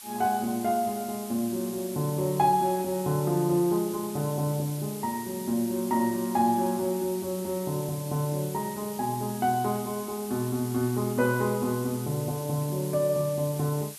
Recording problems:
background hiss; slope +4 dB per octave, SNR 13 dB

